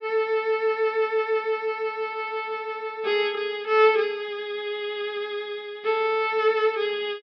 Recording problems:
treble cut off; nothing above 5.5 kHz

